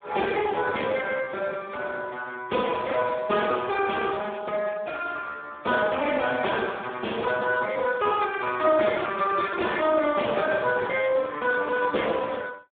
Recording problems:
phone line; 260 Hz to 3.5 kHz, Speex

